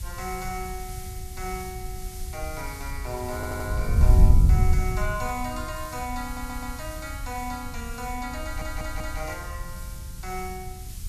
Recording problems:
background hiss; slope +3 dB per octave, SNR 9 dB
wind noise; below 84 Hz, SNR -5 dB
stutter; at 3.5 s, at 6 s and at 8.5 s

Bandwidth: 14 kHz